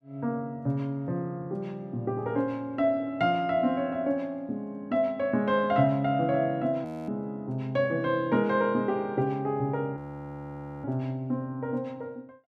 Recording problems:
audio freezing; at 7 s and at 10 s for 1 s

